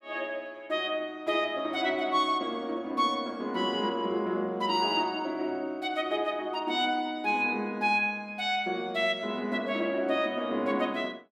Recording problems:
none

